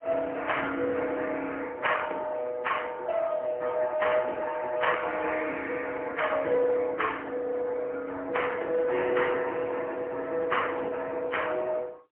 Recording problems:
phone line; 300 Hz to 3.2 kHz, AMR-NB, then MP3

